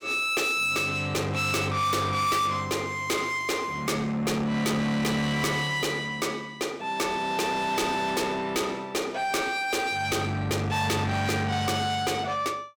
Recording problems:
distorted audio; soft clipping, signal-to-distortion ratio 6 dB

